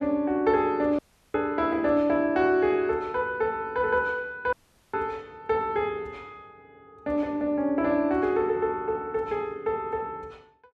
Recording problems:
dropout; at 1 s and at 4.5 s

